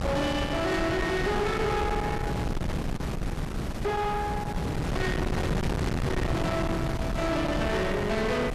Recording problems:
distorted audio; soft clipping, signal-to-distortion ratio 7 dB
hiss; slope 0 dB per octave, SNR 23 dB
wind on the microphone; below 660 Hz, SNR 2 dB

